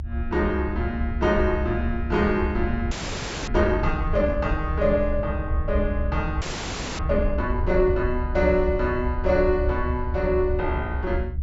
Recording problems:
treble missing; nothing above 8 kHz
low-frequency rumble; below 72 Hz, SNR 4 dB
audio freezing; at 3 s for 0.5 s and at 6.5 s for 0.5 s

